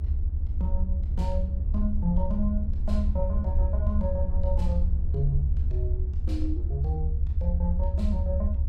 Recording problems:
rumble; below 78 Hz, SNR -6 dB

